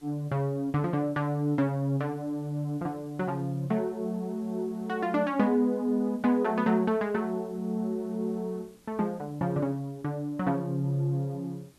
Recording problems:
hiss; SNR 29 dB

